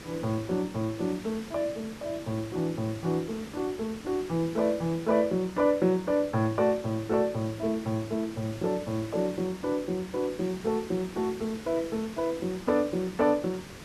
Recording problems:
background hiss; SNR 15 dB

